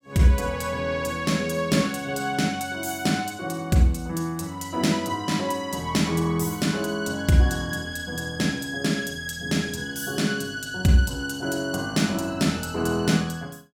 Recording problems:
none

